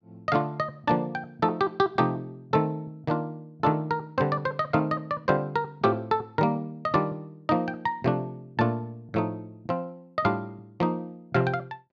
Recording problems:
none

